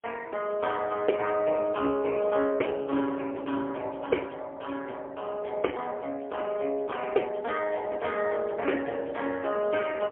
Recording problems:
telephone audio; 240 Hz to 2.3 kHz, AMR-NB, then MP3

